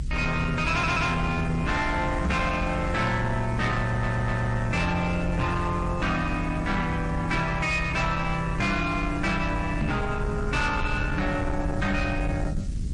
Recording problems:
lossy compression; MP3, then MP3, log-spectral distance 2 dB, nothing above 9 kHz
distorted audio; soft clipping, signal-to-distortion ratio 11 dB
background hiss; slope +4 dB per octave, SNR 24 dB
low-frequency rumble; below 130 Hz, SNR 7 dB
stutter; at 0.5 s and at 4 s
knock on the microphone; at 2.5 s and at 10 s; peak +3 dB vs average level

